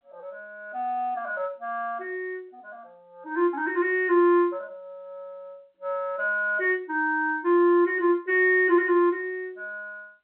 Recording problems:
telephone audio; 280 Hz to 3.3 kHz, G.711

